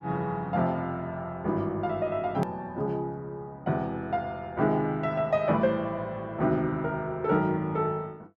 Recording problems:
hard cut with a click; at 2.5 s

